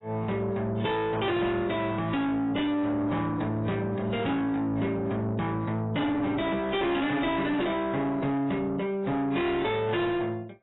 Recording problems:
codec artefacts; AAC, log-spectral distance 2 dB, nothing above 3.8 kHz
distortion; soft clipping, signal-to-distortion ratio 8 dB

